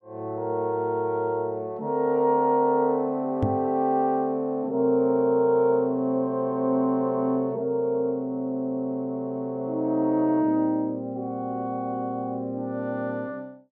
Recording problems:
knock on the microphone; at 3.5 s; peak +3 dB vs average level

